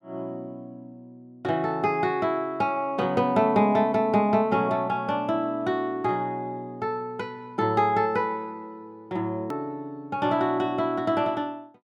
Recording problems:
edit click; at 9.5 s

